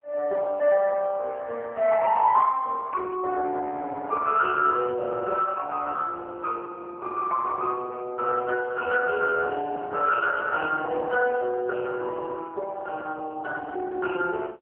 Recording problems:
phone line; 320 Hz to 2.8 kHz, AMR-NB

